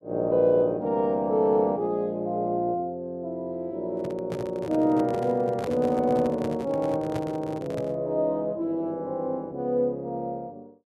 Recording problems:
handling noise; from 4 to 8 s; peak -3 dB vs average level

